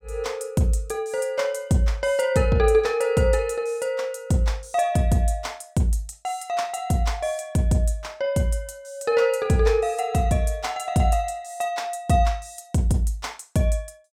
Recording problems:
none

